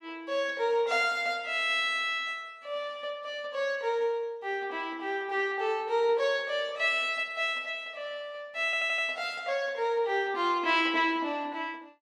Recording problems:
stutter; at 8.5 s

